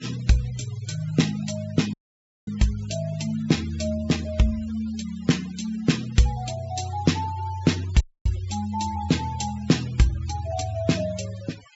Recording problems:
treble cut off; nothing above 8 kHz
noise reduction artefacts; signal-to-artefact ratio 19 dB
dropout; at 2 s for 0.5 s and at 8 s

